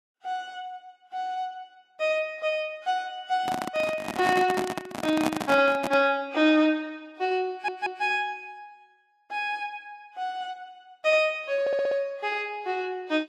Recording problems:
lossy compression; Vorbis, log-spectral distance 2 dB
microphone handling noise; from 3.5 to 6 s; peak +4 dB vs average level
stutter; at 7.5 s and at 12 s

